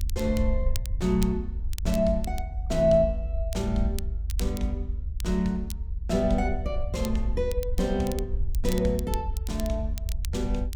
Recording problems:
rumble; below 72 Hz, SNR 4 dB
crackle; vinyl, SNR 15 dB

